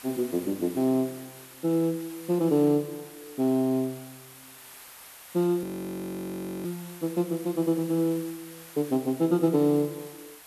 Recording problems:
background hiss; SNR 18 dB
audio freezing; at 5.5 s for 1 s

